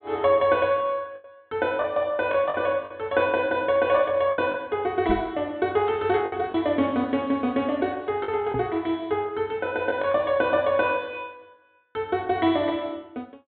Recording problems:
treble missing; nothing above 4 kHz
packet loss; 4% of the sound replaced, filled with the last packet
microphone thump; at 5 s and at 8.5 s; peak -2 dB vs average level

